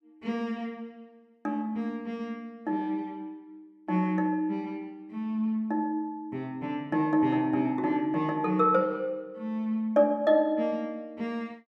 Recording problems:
none

